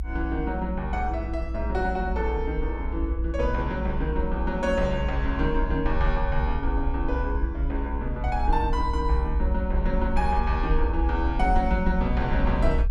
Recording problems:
rumble; below 60 Hz, SNR 1 dB

